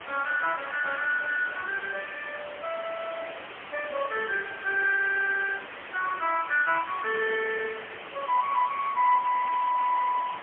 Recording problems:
phone line; 370 Hz to 3.1 kHz, AMR-NB, then MP3
hiss; SNR 12 dB

